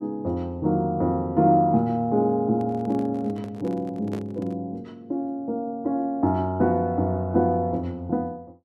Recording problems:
microphone handling noise; from 2.5 to 4.5 s; peak -8 dB vs average level

